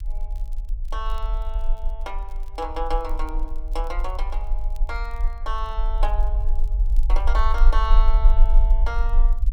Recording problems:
rumble; below 40 Hz, strongest tone 26 Hz, SNR -7 dB
crackling; vinyl, SNR 27 dB

